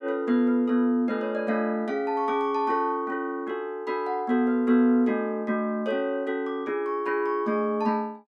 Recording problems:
none

